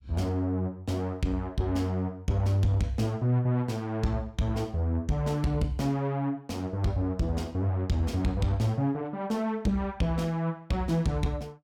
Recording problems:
distorted audio; soft clipping, signal-to-distortion ratio 11 dB

